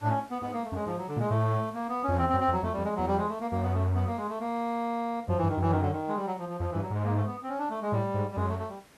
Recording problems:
background hiss; slope -4 dB per octave, SNR 26 dB

